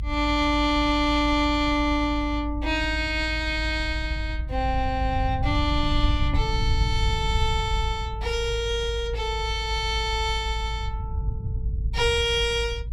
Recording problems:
low-frequency rumble; below 82 Hz, strongest tone 52 Hz, SNR 5 dB

